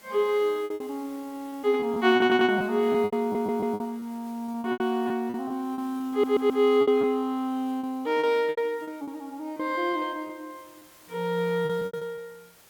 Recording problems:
background hiss; slope -2 dB per octave, SNR 27 dB
packet loss; 12% of the sound replaced, filled with repeated pitch periods
stutter; at 2 s, at 3 s and at 6 s

